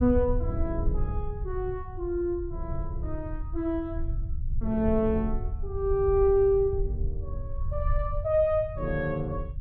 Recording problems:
low-frequency rumble; below 78 Hz, SNR 6 dB

